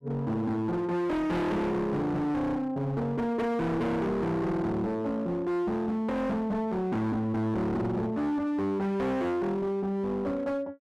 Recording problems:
distorted audio; hard clipping, signal-to-distortion ratio 7 dB

